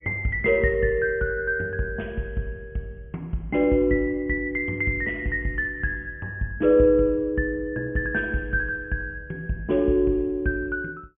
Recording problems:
treble missing; nothing above 3.2 kHz

